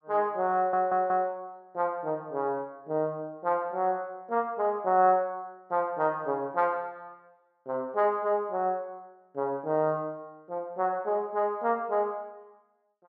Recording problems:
audio stuttering; at 0.5 s

